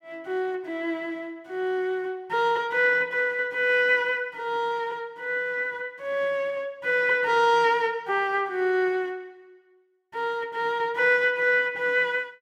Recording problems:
none

